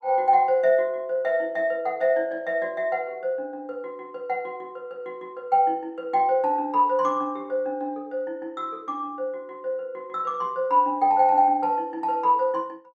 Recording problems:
none

